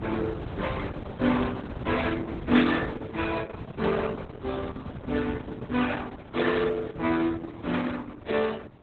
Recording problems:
lossy codec; Opus, then Opus, log-spectral distance 4 dB
wind on the microphone; below 400 Hz, SNR 11 dB

